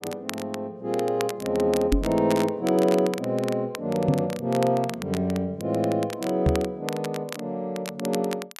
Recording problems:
crackle; vinyl, SNR 13 dB
microphone thump; at 2 s, at 4 s and at 6.5 s; peak +7 dB vs average level

